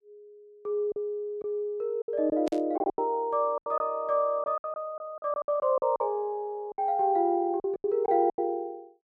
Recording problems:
lost packets; 12% of the sound replaced, filled with silence
static burst; at 2.5 s; peak -12 dB vs average level

